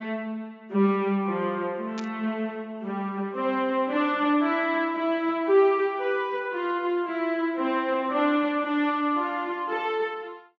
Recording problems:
treble cut off; nothing above 7.5 kHz
burst of static; at 2 s; peak -9 dB vs average level

